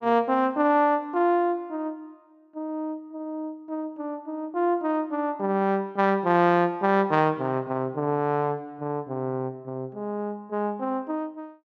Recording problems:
none

